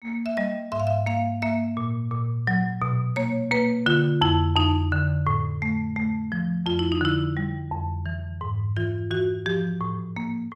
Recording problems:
none

